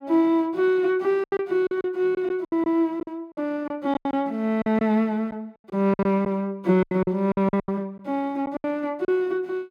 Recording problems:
lost packets; 11% of the sound replaced, filled with silence

